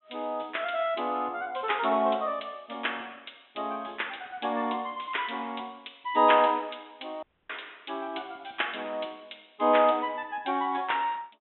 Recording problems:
treble cut off; nothing above 3.7 kHz
audio cutting out; at 7 s

